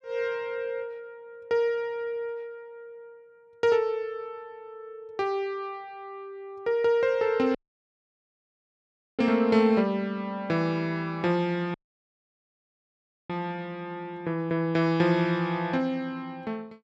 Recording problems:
audio cutting out; at 7.5 s for 1.5 s and at 12 s for 1.5 s

